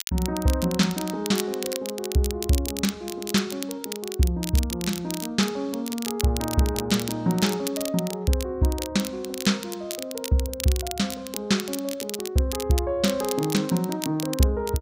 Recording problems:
crackle; vinyl, SNR 9 dB

